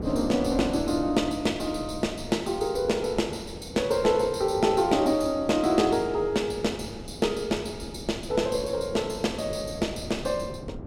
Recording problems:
wind noise; below 370 Hz, SNR 13 dB

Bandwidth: 16 kHz